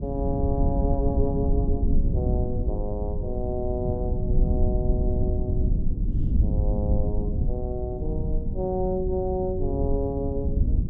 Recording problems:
rumble; below 110 Hz, SNR -3 dB

